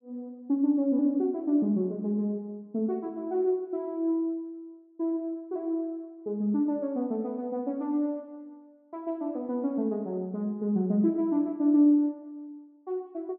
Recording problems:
none

